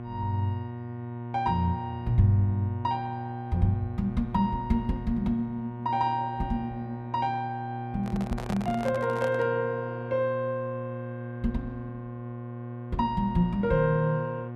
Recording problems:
hum; 60 Hz, harmonics up to 1.1 kHz, SNR 8 dB
microphone handling noise; from 8 to 9.5 s; peak -4 dB vs average level

